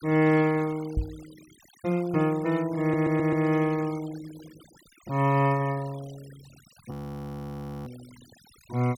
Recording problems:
denoising artefacts; signal-to-artefact ratio 22 dB
knock on the microphone; at 1 s; peak +1 dB vs average level
audio stuttering; at 3 s
frozen audio; at 7 s for 1 s

